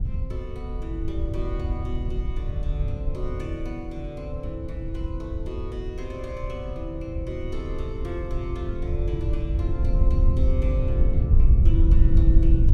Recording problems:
wind on the microphone; below 74 Hz, SNR -8 dB

